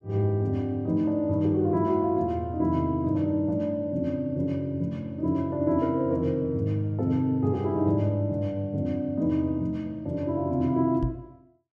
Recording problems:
microphone bump; at 11 s; peak 0 dB vs average level

